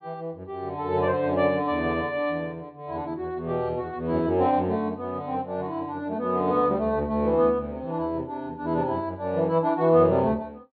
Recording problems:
low-pass filter; nothing above 4.4 kHz

